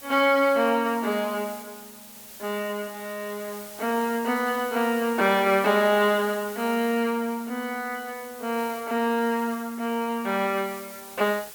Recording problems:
background hiss; slope 0 dB per octave, SNR 16 dB

